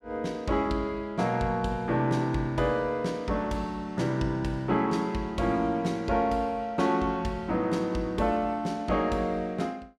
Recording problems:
none

